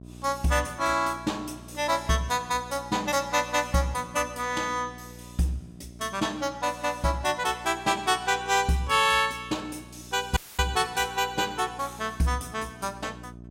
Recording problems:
hum; 60 Hz, harmonics up to 720 Hz, SNR 19 dB
audio cutting out; at 10 s

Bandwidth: 16 kHz